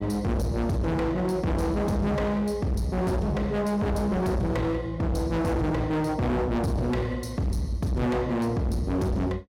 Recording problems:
distortion; hard clipping, signal-to-distortion ratio 6 dB

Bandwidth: 16.5 kHz